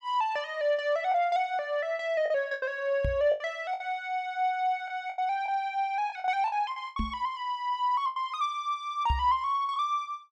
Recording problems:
lost packets; 7% of the sound replaced, filled with the last packet
knock on the microphone; at 3 s, at 7 s and at 9 s; peak +3 dB vs average level

